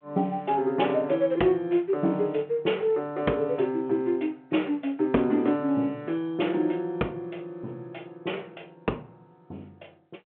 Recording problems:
phone line; 220 Hz to 3.3 kHz, G.726

